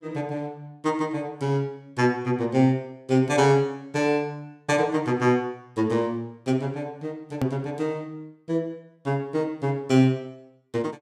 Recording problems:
edit click; at 7.5 s

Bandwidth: 15.5 kHz